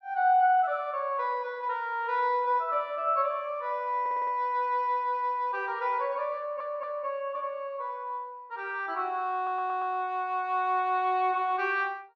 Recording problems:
audio stuttering; at 4 s, at 6.5 s and at 9.5 s

